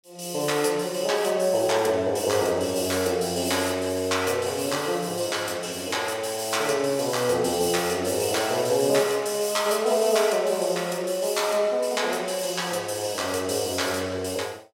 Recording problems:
none

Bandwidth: 16 kHz